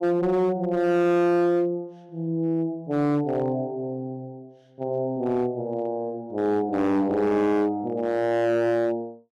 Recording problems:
distortion; hard clipping, uneven, signal-to-distortion ratio 10 dB

